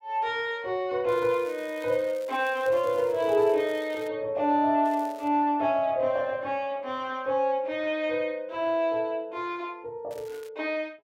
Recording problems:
crackling; from 1 to 4 s, at 5 s and at 10 s; loose cable, SNR 25 dB

